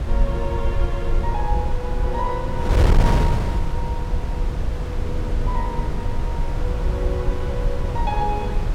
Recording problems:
rumble; below 54 Hz, SNR -1 dB
wind on the microphone; below 150 Hz, SNR -4 dB

